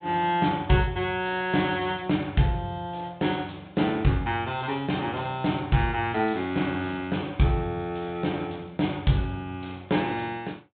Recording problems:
low-pass filter; nothing above 4 kHz

